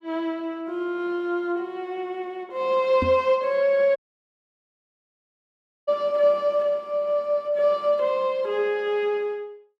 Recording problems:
microphone bump; at 3 s; peak 0 dB vs average level
dropout; at 4 s for 2 s

